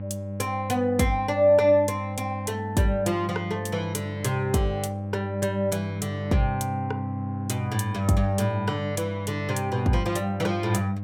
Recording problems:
mains hum; 50 Hz, harmonics up to 800 Hz, SNR 7 dB

